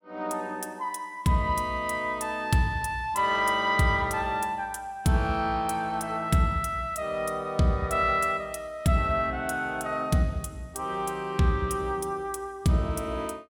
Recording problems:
none

